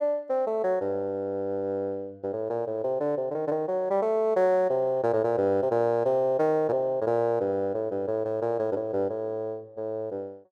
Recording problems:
none

